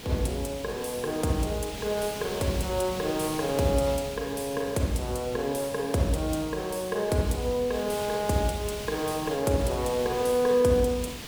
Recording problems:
hiss; SNR 11 dB

